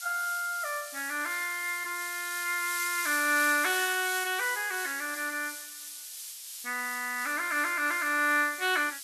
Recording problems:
background hiss; slope +7 dB per octave, SNR 8 dB

